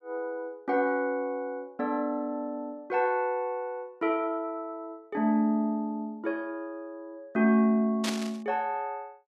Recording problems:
burst of static; at 8 s; peak +2 dB vs average level

